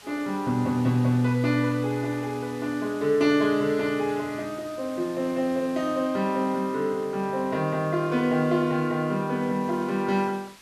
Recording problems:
hiss; slope 0 dB per octave, SNR 22 dB

